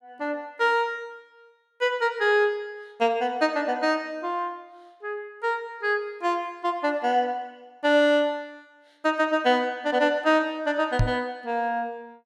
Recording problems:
microphone thump; at 11 s; peak +6 dB vs average level

